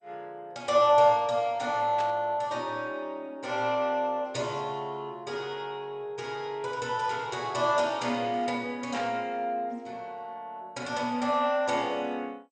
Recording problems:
lossy codec; MP2, log-spectral distance 2 dB, nothing above 8.2 kHz
burst of static; at 2 s and at 9 s; peak -6 dB vs average level

